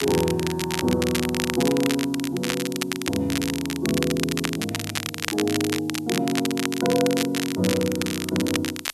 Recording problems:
background hiss; SNR 28 dB
crackling; vinyl, SNR 4 dB

